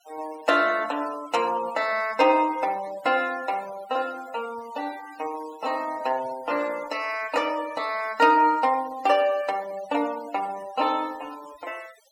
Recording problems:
denoising artefacts; signal-to-artefact ratio 20 dB

